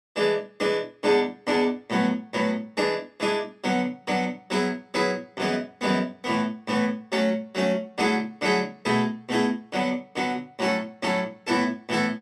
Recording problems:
none

